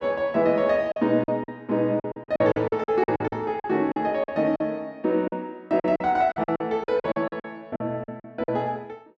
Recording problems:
packet loss; 14% of the sound replaced, filled with silence

